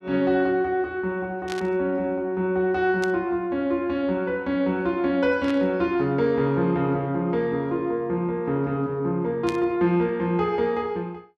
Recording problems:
burst of static; 4 times, first at 1.5 s; peak -7 dB vs average level

